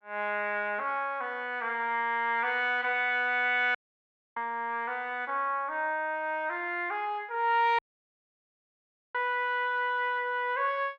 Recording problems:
dropout; at 4 s for 0.5 s and at 8 s for 1.5 s

